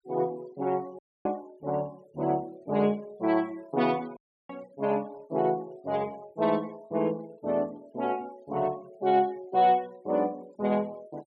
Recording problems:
noise reduction artefacts; signal-to-artefact ratio 27 dB
audio cutting out; at 1 s and at 4 s

